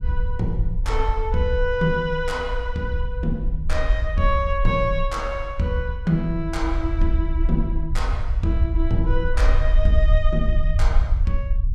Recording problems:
low-frequency rumble; below 54 Hz, SNR 0 dB

